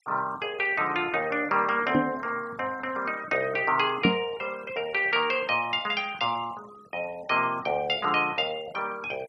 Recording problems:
denoising artefacts; signal-to-artefact ratio 23 dB
microphone thump; at 2 s and at 4 s; peak +7 dB vs average level

